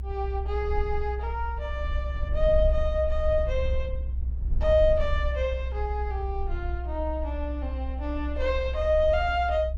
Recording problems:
rumble; below 64 Hz, SNR 3 dB

